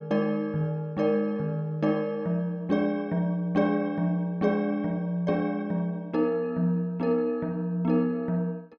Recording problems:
none

